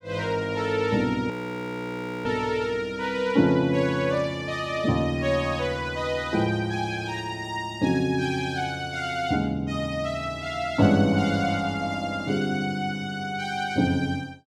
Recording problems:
frozen audio; at 1.5 s for 1 s

